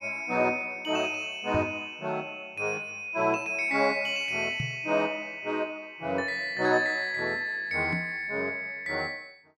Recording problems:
knock on the microphone; at 1.5 s, at 4.5 s and at 8 s; peak -1 dB vs average level

